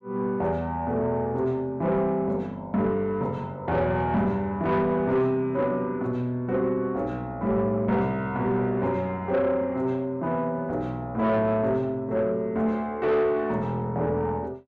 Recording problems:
distortion; soft clipping, signal-to-distortion ratio 12 dB

